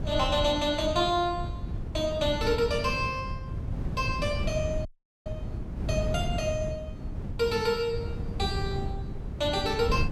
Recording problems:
wind on the microphone; below 150 Hz, SNR 6 dB
audio cutting out; at 5 s

